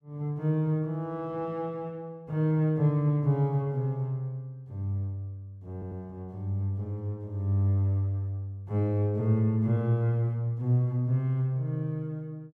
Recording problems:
stutter; at 5.5 s

